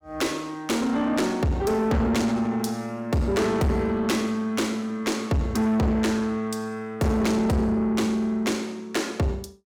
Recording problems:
distorted audio; soft clipping, signal-to-distortion ratio 8 dB

